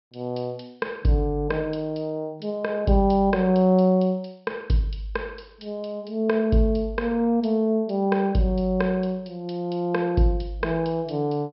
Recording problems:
treble missing; nothing above 5.4 kHz

